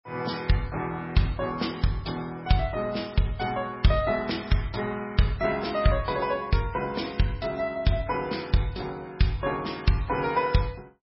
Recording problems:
lossy codec; MP3, log-spectral distance 4 dB, nothing above 5.5 kHz

